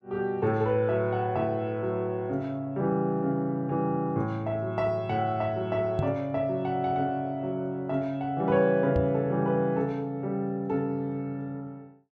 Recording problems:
microphone bump; at 6 s and at 9 s; peak +3 dB vs average level

